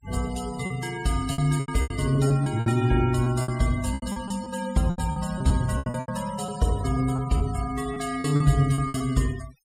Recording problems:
noise reduction artefacts; signal-to-artefact ratio 17 dB
packet loss; 13% of the sound replaced, filled with repeated pitch periods

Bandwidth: 16 kHz